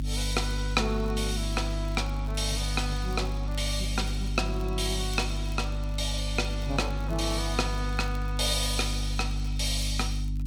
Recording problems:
hum; 50 Hz, harmonics up to 300 Hz, SNR 1 dB
crackling; vinyl, SNR 24 dB

